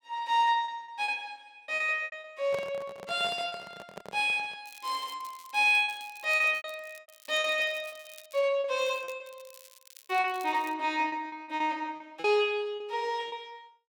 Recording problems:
packet loss; 10% of the sound replaced, filled with repeated pitch periods
handling noise; from 2.5 to 4.5 s; peak -6 dB vs average level
crackle; from 4.5 to 8.5 s and from 9 to 11 s; loose cable, SNR 23 dB

